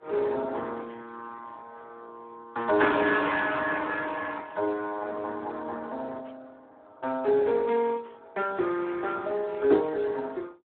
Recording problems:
telephone audio; 280 Hz to 3.8 kHz, Speex

